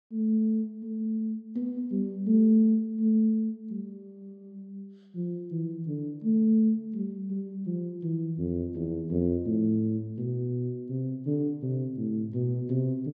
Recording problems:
none

